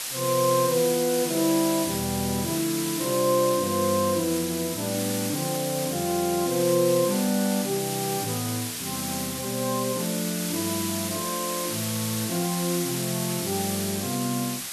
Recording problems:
hiss; slope +2 dB per octave, SNR 4 dB

